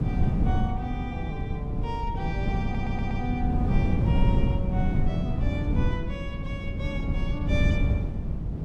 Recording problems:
electrical hum; 60 Hz, harmonics up to 540 Hz, SNR 19 dB
wind on the microphone; below 160 Hz, SNR -7 dB
stutter; at 2.5 s

